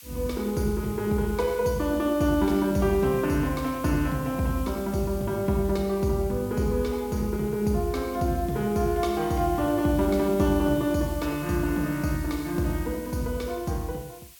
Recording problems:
background hiss; slope +3 dB per octave, SNR 18 dB

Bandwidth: 17 kHz